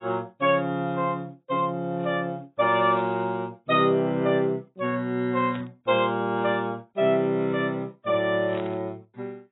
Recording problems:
lossy compression; AAC, log-spectral distance 2 dB, nothing above 3.2 kHz
static burst; at 3 s, at 5.5 s and at 8.5 s; peak -13 dB vs average level

